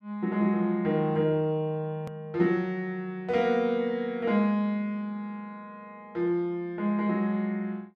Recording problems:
edit click; at 2 s

